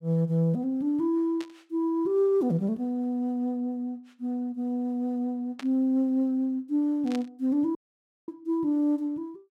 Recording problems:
burst of static; at 1.5 s, at 5.5 s and at 7 s; peak -9 dB vs average level
dropout; at 8 s for 0.5 s

